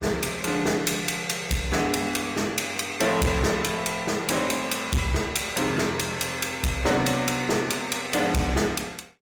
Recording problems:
codec artefacts; Opus, log-spectral distance 6 dB, nothing above 19 kHz
distorted audio; hard clipping, uneven, signal-to-distortion ratio 10 dB

